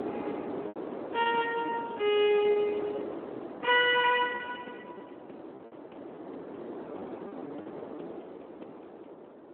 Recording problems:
telephone audio; 260 Hz to 3.2 kHz, Speex
wind on the microphone; below 630 Hz, SNR 13 dB
packet loss; 8% of the sound replaced, filled with repeated pitch periods

